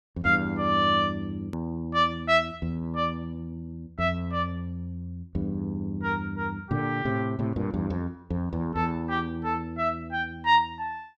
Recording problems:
hard cut with a click; at 1.5 s

